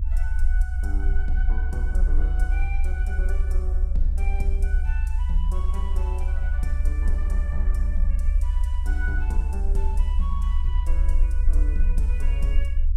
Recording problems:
low-frequency rumble; below 66 Hz, SNR -13 dB

